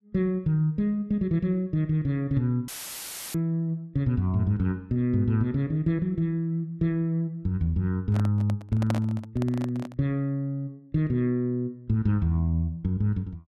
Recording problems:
dropout; at 2.5 s for 0.5 s; filled with static
handling noise; from 8 to 10 s; peak 0 dB vs average level

